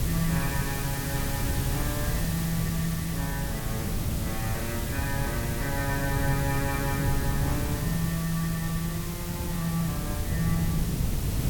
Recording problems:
hiss; slope -1 dB per octave, SNR 4 dB
wind on the microphone; below 160 Hz, SNR 1 dB

